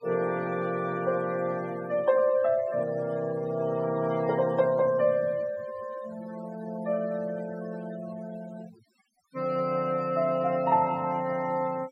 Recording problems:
noise reduction artefacts; signal-to-artefact ratio 19 dB

